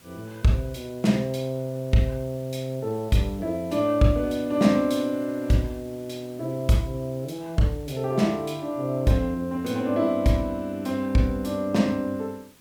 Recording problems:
background hiss; SNR 26 dB

